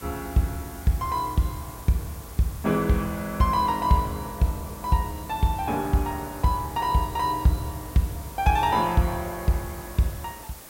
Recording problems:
background hiss; slope -3 dB per octave, SNR 17 dB

